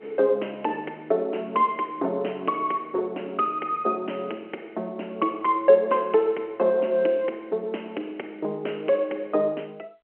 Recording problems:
phone line; 280 Hz to 3.1 kHz, G.711

